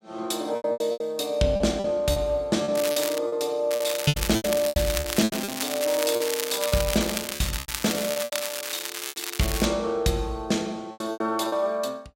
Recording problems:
packet loss; 13% of the sound replaced, filled with repeated pitch periods
crackle; at 3 s and from 3.5 to 9.5 s; loose cable, SNR 4 dB

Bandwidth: 16 kHz